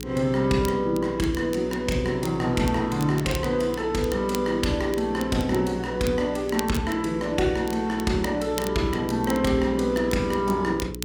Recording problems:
electrical hum; 60 Hz, harmonics up to 420 Hz, SNR 12 dB
crackle; vinyl, SNR 17 dB

